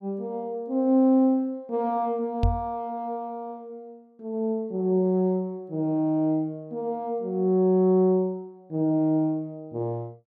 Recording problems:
microphone thump; at 2.5 s; peak +5 dB vs average level

